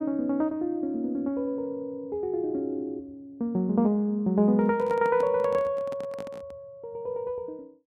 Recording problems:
microphone handling noise; from 4.5 to 6.5 s; peak -8 dB vs average level

